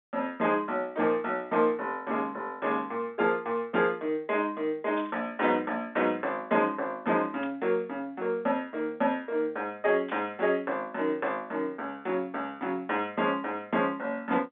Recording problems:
telephone audio; 240 Hz to 3.8 kHz, G.711
burst of static; at 5 s, at 7.5 s and at 10 s; peak -12 dB vs average level

